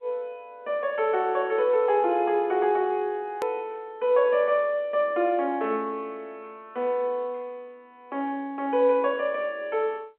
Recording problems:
phone line; 240 Hz to 3.6 kHz, G.711
click at an edit; at 3.5 s

